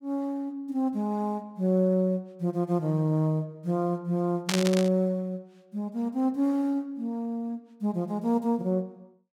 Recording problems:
burst of static; at 4.5 s; peak +4 dB vs average level

